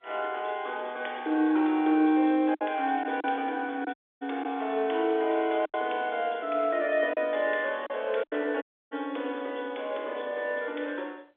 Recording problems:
phone line; 260 Hz to 3.6 kHz, G.711
packet loss; 3% of the sound replaced, filled with silence
dropout; at 4 s and at 8.5 s

